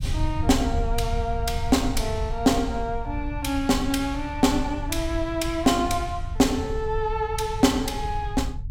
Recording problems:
rumble; below 86 Hz, SNR 7 dB

